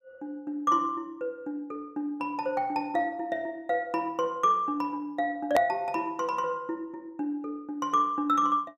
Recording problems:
hard cut with a click; at 5.5 s

